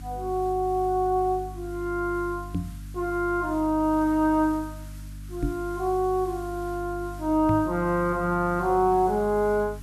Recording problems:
hum; 50 Hz, harmonics up to 300 Hz, SNR 15 dB
background hiss; SNR 26 dB
microphone bump; at 2.5 s, at 5.5 s and at 7.5 s; peak +1 dB vs average level

